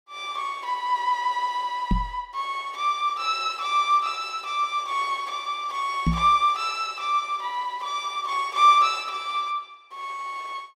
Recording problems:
microphone bump; at 2 s and at 6 s; peak +5 dB vs average level

